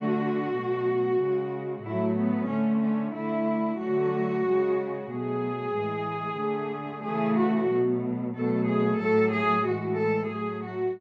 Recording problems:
none

